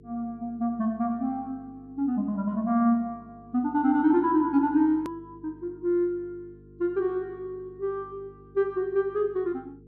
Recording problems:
hum; 50 Hz, harmonics up to 450 Hz, SNR 24 dB
edit click; at 5 s

